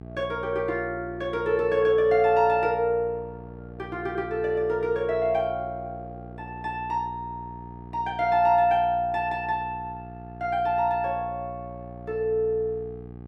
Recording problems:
hum; 60 Hz, harmonics up to 900 Hz, SNR 16 dB

